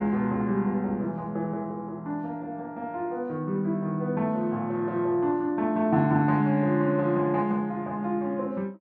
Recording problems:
none

